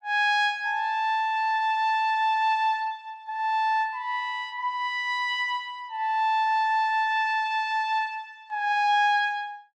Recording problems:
none

